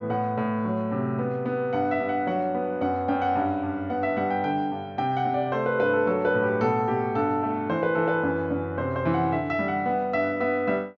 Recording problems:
treble missing; nothing above 8 kHz

